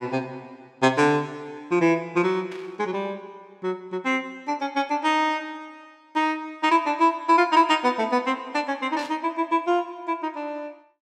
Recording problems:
burst of static; at 2.5 s and at 9 s; peak -13 dB vs average level

